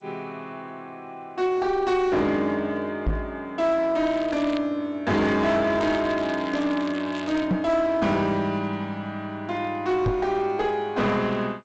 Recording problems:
codec artefacts; G.722, log-spectral distance 2 dB, nothing above 7.8 kHz
distorted audio; hard clipping, uneven, signal-to-distortion ratio 11 dB
microphone thump; at 3 s, at 7.5 s and at 10 s; peak +4 dB vs average level
crackling; at 4 s and from 6 to 7.5 s; loose cable, SNR 17 dB

